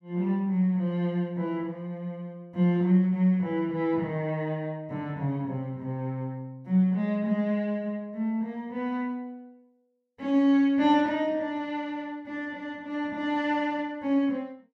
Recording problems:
none

